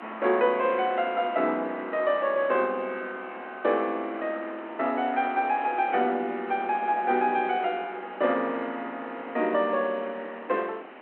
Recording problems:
telephone audio; 220 Hz to 3.2 kHz, G.726
hiss; SNR 17 dB

